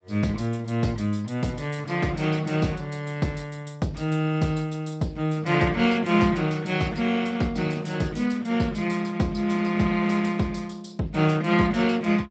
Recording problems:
lossy compression; Speex, log-spectral distance 4 dB, nothing above 7.6 kHz

